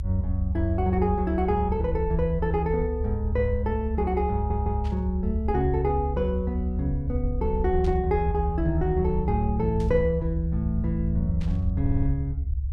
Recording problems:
rumble; below 72 Hz, strongest tone 68 Hz, SNR 3 dB
stutter; at 4.5 s and at 12 s
static burst; 4 times, first at 5 s; peak -14 dB vs average level

